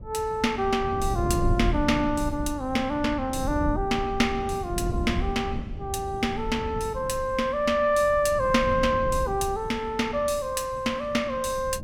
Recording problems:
wind noise; below 150 Hz, SNR 8 dB

